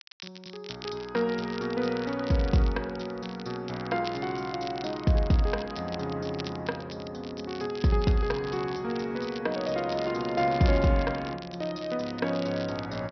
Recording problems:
treble missing; nothing above 5.8 kHz
crackle; vinyl, SNR 16 dB

